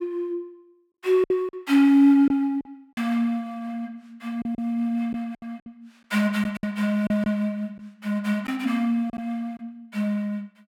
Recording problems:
lost packets; 6% of the sound replaced, filled with silence

